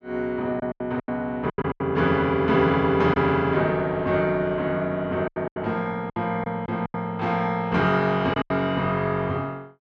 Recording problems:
lost packets; 9% of the sound replaced, filled with silence

